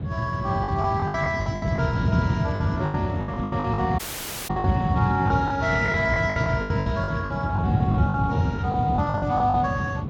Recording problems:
codec artefacts; Speex, log-spectral distance 2 dB
rumble; below 200 Hz, SNR 0 dB
lost packets; 15% of the sound replaced, filled with the last packet
audio cutting out; at 4 s for 0.5 s

